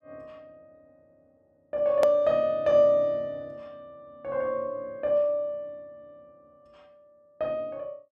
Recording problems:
click at an edit; at 2 s

